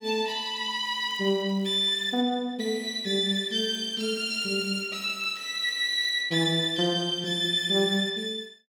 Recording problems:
crackling; from 1 to 2 s and from 3.5 to 6 s; loose cable, SNR 29 dB

